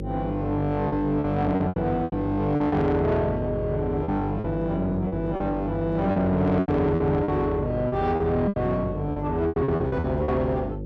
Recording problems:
distortion; soft clipping, signal-to-distortion ratio 11 dB
electrical hum; 50 Hz, harmonics up to 550 Hz, SNR 8 dB
packet loss; 11% of the sound replaced, filled with repeated pitch periods

